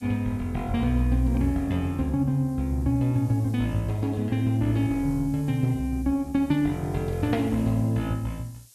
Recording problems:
background hiss; SNR 27 dB

